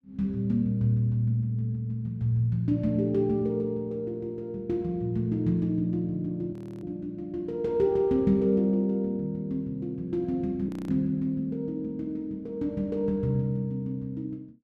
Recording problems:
audio freezing; at 6.5 s and at 11 s

